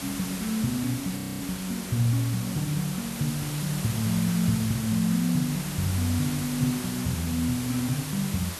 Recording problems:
hum; 50 Hz, harmonics up to 600 Hz, SNR 21 dB
background hiss; slope -1 dB per octave, SNR 7 dB
audio freezing; at 1 s

